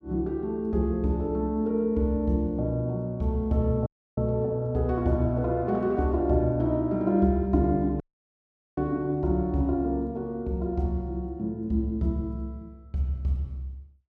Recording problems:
audio cutting out; at 4 s and at 8 s for 1 s

